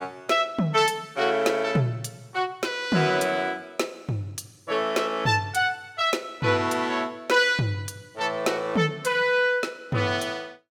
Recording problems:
none

